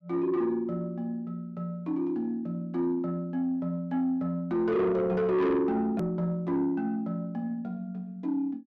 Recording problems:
distortion; soft clipping, signal-to-distortion ratio 10 dB
hard cut with a click; at 6 s

